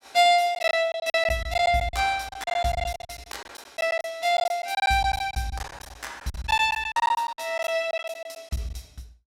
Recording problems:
packet loss; 16% of the sound replaced, filled with silence

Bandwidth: 16.5 kHz